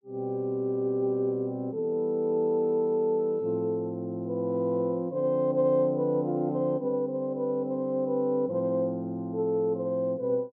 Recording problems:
none

